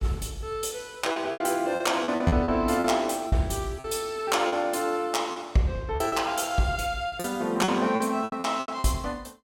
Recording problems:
packet loss; 11% of the sound replaced, filled with repeated pitch periods

